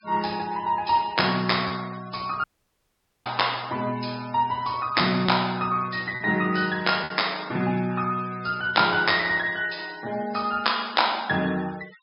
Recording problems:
low-pass filter; nothing above 5.5 kHz
noise reduction artefacts; signal-to-artefact ratio 20 dB
lost packets; 1.2% of the sound replaced, filled with repeated pitch periods
dropout; at 2.5 s for 1 s

